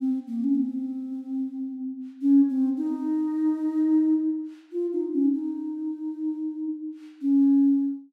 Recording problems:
none

